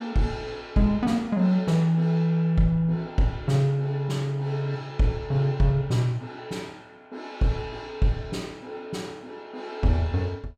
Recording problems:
none

